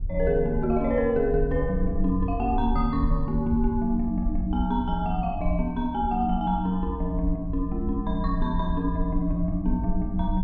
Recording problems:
rumble; below 66 Hz, SNR 6 dB

